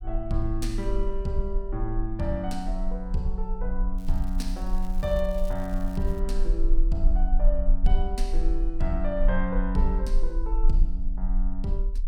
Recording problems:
rumble; below 36 Hz, strongest tone 20 Hz, SNR -2 dB
crackling; from 4 to 6 s; loose cable, SNR 21 dB

